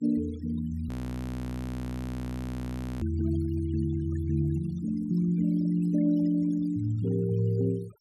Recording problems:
noise reduction artefacts; signal-to-artefact ratio 22 dB
audio freezing; at 1 s for 2 s

